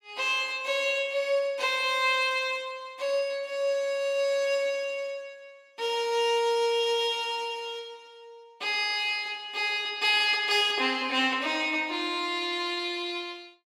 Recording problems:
none

